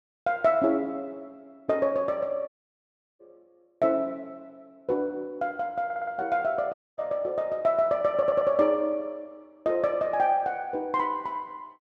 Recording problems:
dropout; at 2.5 s for 0.5 s and at 6.5 s
stutter; at 6 s and at 8 s

